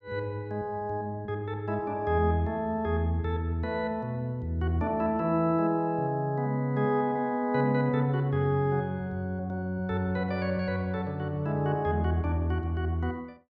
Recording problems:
none

